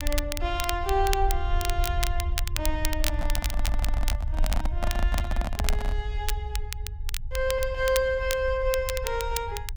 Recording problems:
rumble; below 60 Hz, SNR 2 dB
crackle; vinyl, SNR 6 dB
handling noise; from 3 to 6 s; peak +1 dB vs average level
stutter; at 3.5 s

